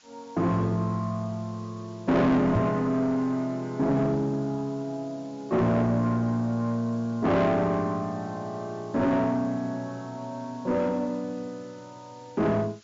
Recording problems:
treble missing; nothing above 7.3 kHz
distorted audio; soft clipping, signal-to-distortion ratio 8 dB
background hiss; slope +2 dB per octave, SNR 28 dB
knock on the microphone; at 2.5 s; peak +6 dB vs average level

